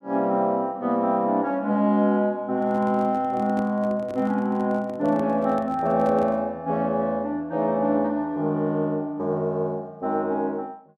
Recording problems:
handling noise; from 2.5 to 6.5 s; peak -9 dB vs average level

